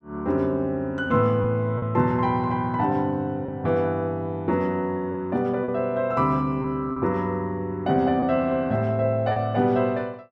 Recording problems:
packet loss; 3% of the sound replaced, filled with repeated pitch periods

